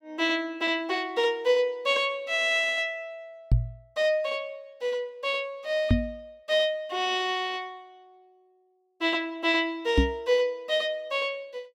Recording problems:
knock on the microphone; at 3.5 s, at 6 s and at 10 s; peak +8 dB vs average level

